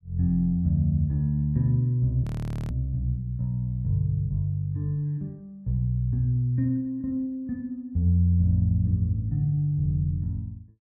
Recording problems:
audio freezing; at 2 s

